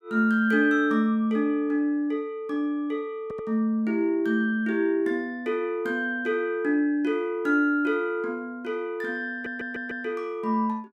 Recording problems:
stutter; at 3 s and at 9.5 s

